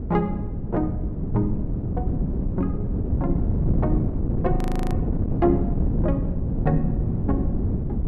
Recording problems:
wind on the microphone; below 200 Hz, SNR -3 dB
audio freezing; at 4.5 s

